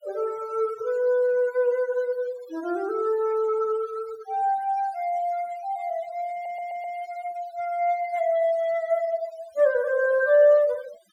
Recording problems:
denoising artefacts; signal-to-artefact ratio 22 dB
stutter; at 6.5 s

